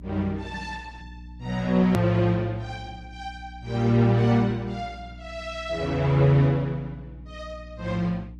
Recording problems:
lossy compression; Opus, log-spectral distance 2 dB, nothing above 14.6 kHz
electrical hum; 60 Hz, harmonics up to 300 Hz, SNR 19 dB
click at an edit; at 2 s

